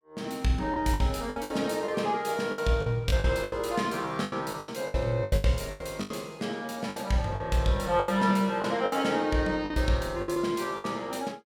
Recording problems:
packet loss; 13% of the sound replaced, filled with the last packet

